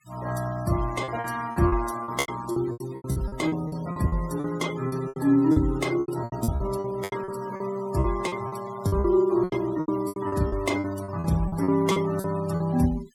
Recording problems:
denoising artefacts; signal-to-artefact ratio 17 dB
lost packets; 17% of the sound replaced, filled with repeated pitch periods

